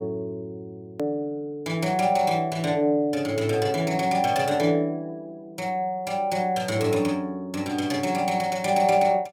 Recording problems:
edit click; at 1 s

